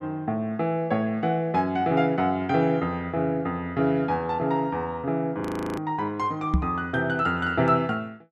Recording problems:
frozen audio; at 5.5 s
knock on the microphone; at 6.5 s; peak +6 dB vs average level

